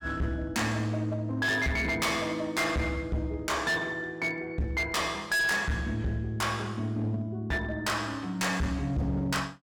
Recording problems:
distortion; hard clipping, uneven, signal-to-distortion ratio 7 dB

